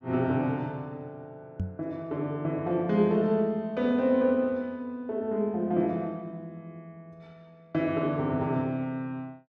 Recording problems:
knock on the microphone; at 1.5 s; peak 0 dB vs average level

